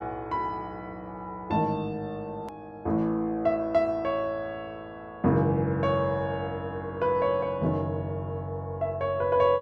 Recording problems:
hard cut with a click; at 2.5 s

